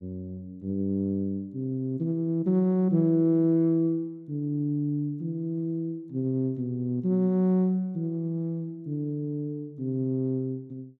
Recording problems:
none

